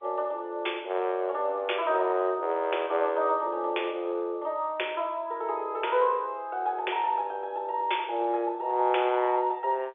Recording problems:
phone line; 300 Hz to 3.5 kHz, G.711

